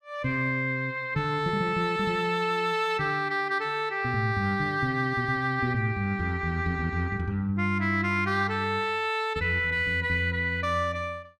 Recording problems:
none

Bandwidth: 15 kHz